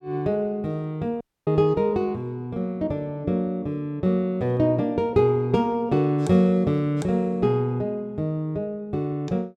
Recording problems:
audio cutting out; at 1 s

